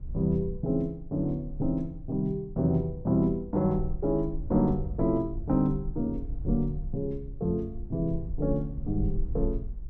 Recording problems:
low-frequency rumble; below 58 Hz, SNR 10 dB

